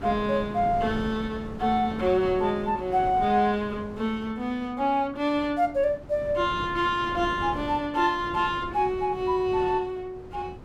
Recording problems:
wind noise; below 440 Hz, SNR 14 dB

